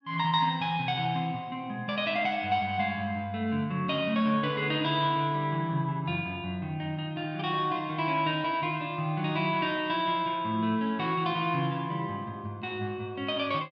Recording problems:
none

